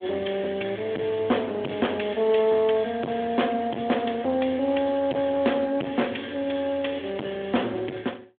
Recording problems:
telephone audio; 190 Hz to 3.5 kHz, Speex
distorted audio; soft clipping, signal-to-distortion ratio 6 dB

